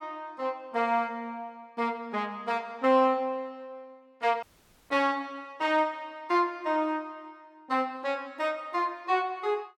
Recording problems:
audio cutting out; at 4.5 s

